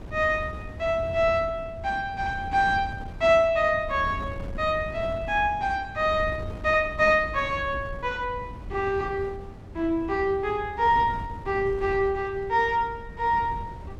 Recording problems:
wind on the microphone; below 180 Hz, SNR 14 dB

